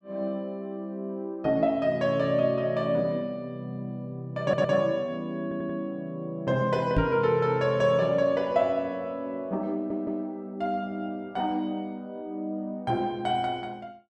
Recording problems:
audio stuttering; at 4.5 s, at 5.5 s and at 9.5 s
microphone bump; at 7 s; peak +6 dB vs average level

